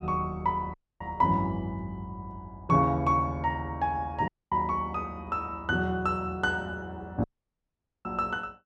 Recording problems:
dropout; at 0.5 s, at 4.5 s and at 7 s for 1 s

